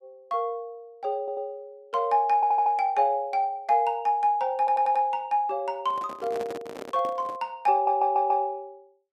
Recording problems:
audio stuttering; 4 times, first at 1 s
handling noise; from 6 to 7.5 s; peak -8 dB vs average level

